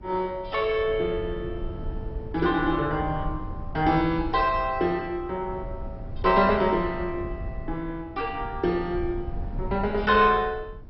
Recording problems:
lossy codec; MP2, log-spectral distance 2 dB, nothing above 5.2 kHz
low-frequency rumble; below 110 Hz, SNR 12 dB

